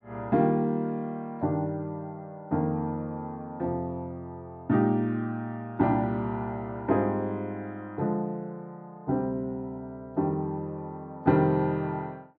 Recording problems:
none

